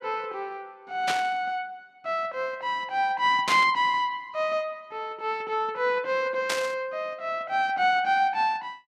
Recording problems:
burst of static; at 1 s, at 3.5 s and at 6.5 s; peak +2 dB vs average level

